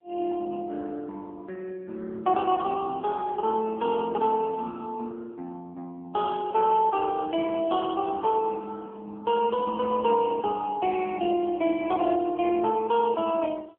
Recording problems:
phone line; 240 Hz to 3.3 kHz, AMR-NB

